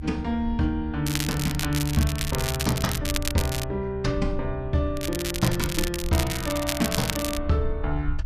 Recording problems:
rumble; below 74 Hz, SNR 8 dB
crackle; from 1 to 3.5 s and from 5 to 7.5 s; loose cable, SNR 4 dB

